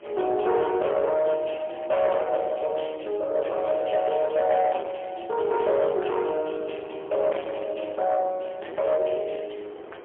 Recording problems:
telephone audio; 320 Hz to 3.3 kHz, AMR-NB, then MP3
distortion; soft clipping, signal-to-distortion ratio 10 dB
wind on the microphone; below 980 Hz, SNR 24 dB

